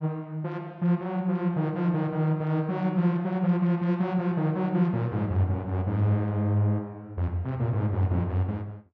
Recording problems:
none

